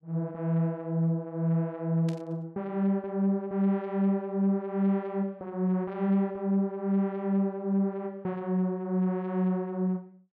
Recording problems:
static burst; at 2 s; peak -12 dB vs average level

